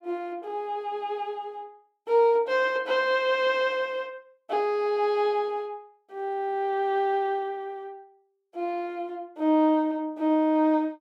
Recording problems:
none

